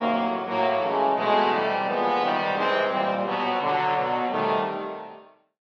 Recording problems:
codec artefacts; MP3, then AAC, log-spectral distance 2 dB

